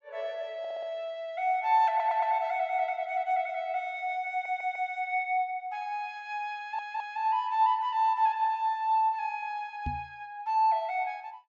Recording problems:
treble missing; nothing above 8 kHz
stutter; 4 times, first at 0.5 s
microphone bump; at 10 s; peak -2 dB vs average level

